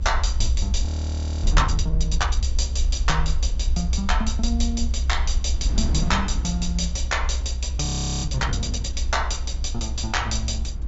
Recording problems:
low-pass filter; nothing above 8 kHz
low-frequency rumble; below 64 Hz, SNR 0 dB
wind noise; below 200 Hz, SNR 9 dB
audio freezing; at 1 s for 0.5 s and at 8 s

